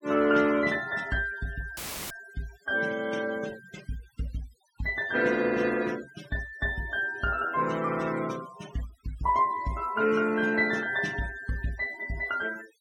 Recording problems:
denoising artefacts; signal-to-artefact ratio 18 dB
audio cutting out; at 2 s; filled with static

